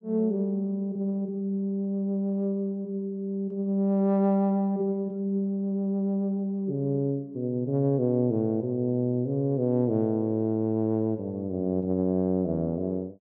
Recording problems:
none

